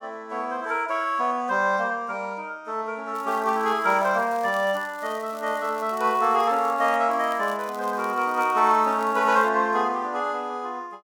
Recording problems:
crackling; from 3 to 7 s and from 7 to 9.5 s; loose cable, SNR 24 dB

